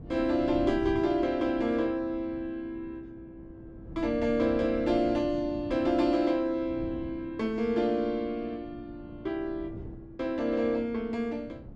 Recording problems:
wind noise; below 230 Hz, SNR 16 dB

